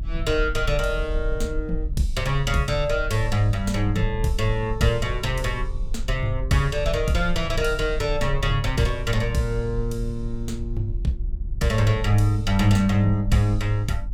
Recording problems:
low-frequency rumble; below 48 Hz, strongest tone 40 Hz, SNR 7 dB

